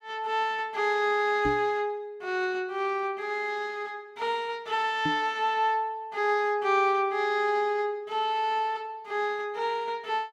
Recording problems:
microphone bump; at 1.5 s and at 5 s; peak 0 dB vs average level

